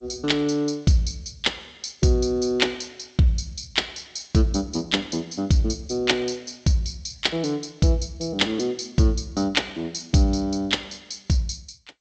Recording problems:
lossy codec; G.722, log-spectral distance 6 dB, nothing above 16 kHz

